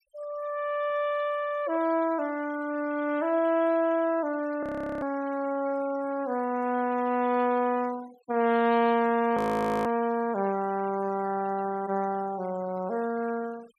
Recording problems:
noise reduction artefacts; signal-to-artefact ratio 22 dB
frozen audio; at 4.5 s and at 9.5 s

